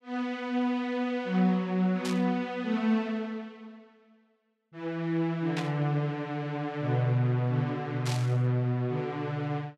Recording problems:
burst of static; at 2 s, at 5.5 s and at 8 s; peak -3 dB vs average level

